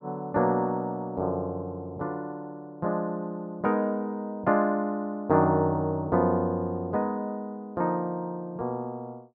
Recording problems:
none

